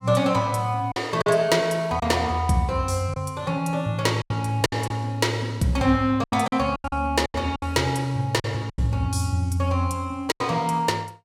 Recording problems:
lost packets; 8% of the sound replaced, filled with silence

